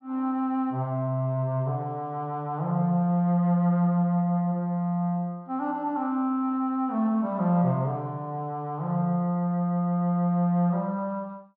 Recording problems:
none

